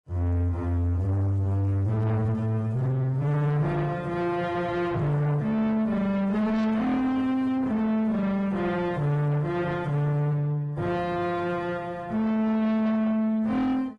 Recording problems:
lossy codec; AAC, then AAC, log-spectral distance 2 dB, nothing above 11 kHz
distortion; soft clipping, signal-to-distortion ratio 6 dB

